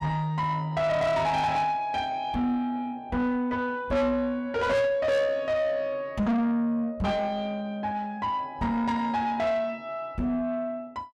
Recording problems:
distorted audio; soft clipping, signal-to-distortion ratio 8 dB

